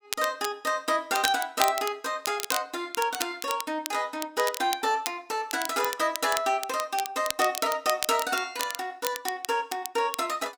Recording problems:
crackling; vinyl, SNR 7 dB

